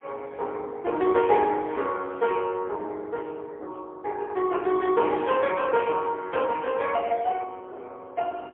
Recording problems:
phone line; 320 Hz to 3.3 kHz, AMR-NB, then MP3

